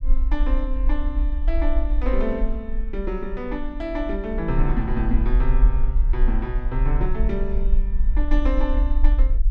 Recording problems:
low-frequency rumble; below 46 Hz, strongest tone 24 Hz, SNR -4 dB

